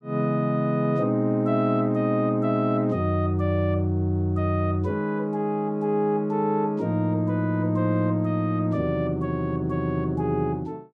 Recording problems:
none

